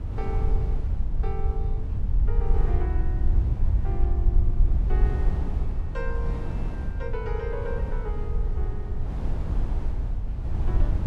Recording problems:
low-frequency rumble; below 62 Hz, SNR -10 dB
wind noise; below 150 Hz, SNR -3 dB

